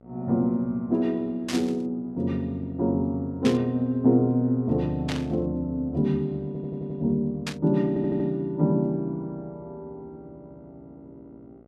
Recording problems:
mains hum; 60 Hz, harmonics up to 1.5 kHz, SNR 29 dB
burst of static; 4 times, first at 1.5 s; peak -2 dB vs average level
stutter; at 6.5 s and at 8 s

